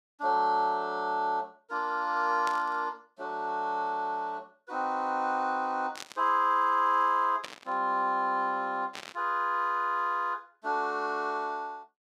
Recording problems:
burst of static; 4 times, first at 2.5 s; peak -5 dB vs average level

